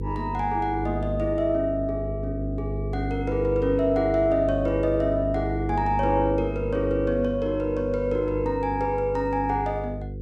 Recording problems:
electrical hum; 50 Hz, harmonics up to 500 Hz, SNR 7 dB

